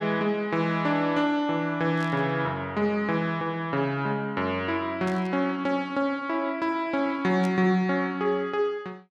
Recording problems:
static burst; at 2 s, at 5 s and at 7.5 s; peak -12 dB vs average level

